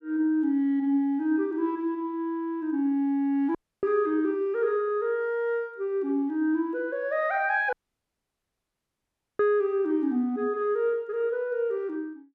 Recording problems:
dropout; at 3.5 s and at 7.5 s for 1.5 s

